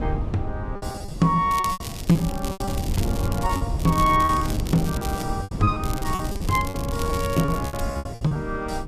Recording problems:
wind on the microphone; below 170 Hz, SNR 5 dB
lost packets; 15% of the sound replaced, filled with repeated pitch periods
crackling; from 1.5 to 3.5 s, from 4 to 5 s and from 6 to 8 s; loose cable, SNR 13 dB

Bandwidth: 14.5 kHz